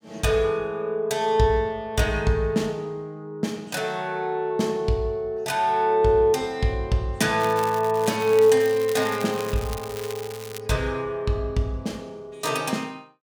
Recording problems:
crackle; from 7.5 to 11 s; loose cable, SNR 15 dB

